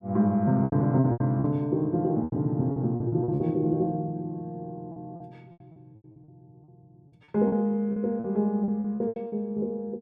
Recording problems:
lost packets; 12% of the sound replaced, filled with repeated pitch periods

